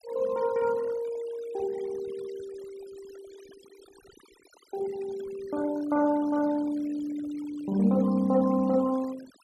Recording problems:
noise reduction artefacts; signal-to-artefact ratio 21 dB

